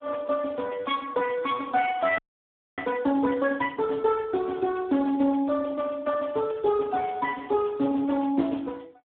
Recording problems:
telephone audio; 170 Hz to 3 kHz, Speex
frozen audio; at 2 s for 0.5 s

